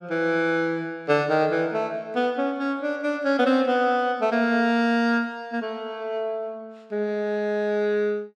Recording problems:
none

